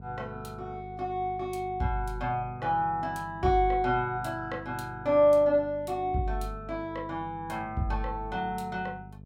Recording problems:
hum; 50 Hz, harmonics up to 650 Hz, SNR 17 dB

